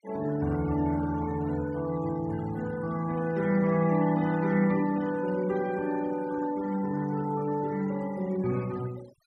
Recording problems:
denoising artefacts; signal-to-artefact ratio 20 dB

